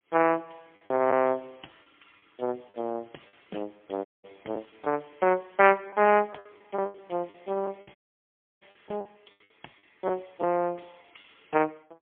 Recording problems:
telephone audio; 300 Hz to 3.3 kHz, AMR-NB, then MP3
packet loss; 7% of the sound replaced, filled with the last packet
dropout; at 4 s and at 8 s for 0.5 s

